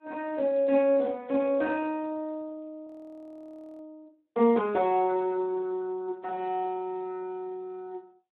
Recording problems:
phone line; 280 Hz to 3.3 kHz, Speex
audio freezing; at 3 s for 1 s

